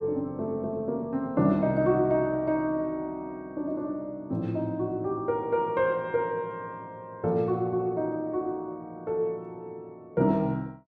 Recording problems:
none

